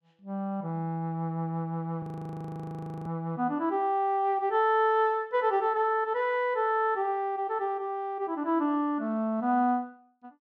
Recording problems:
audio freezing; at 2 s for 1 s

